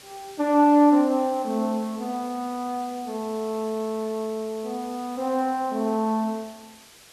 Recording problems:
hiss; slope 0 dB per octave, SNR 21 dB

